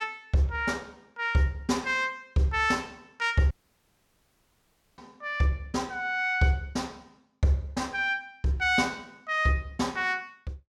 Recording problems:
audio cutting out; at 3.5 s for 1.5 s

